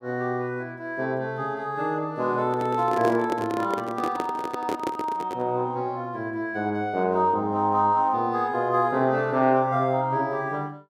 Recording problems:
microphone handling noise; from 2.5 to 5.5 s; peak 0 dB vs average level

